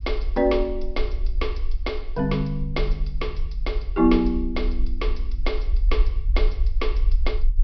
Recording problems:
treble missing; nothing above 5.5 kHz
low-frequency rumble; below 46 Hz, SNR 1 dB

